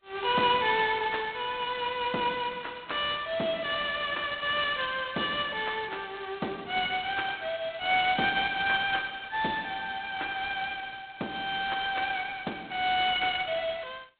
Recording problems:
telephone audio; 170 Hz to 3.9 kHz, G.726

